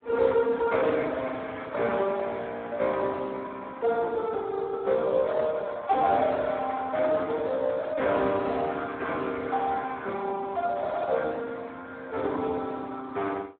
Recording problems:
telephone audio; 300 Hz to 2.7 kHz, Speex

